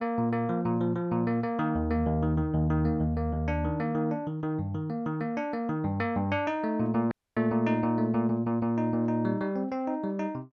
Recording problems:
audio cutting out; at 7 s

